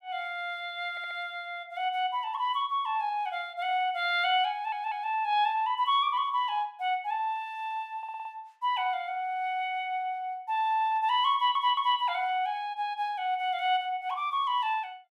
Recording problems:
audio stuttering; 4 times, first at 1 s

